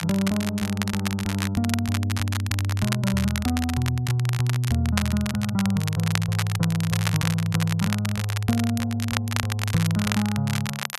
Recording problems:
crackling; vinyl, SNR 7 dB

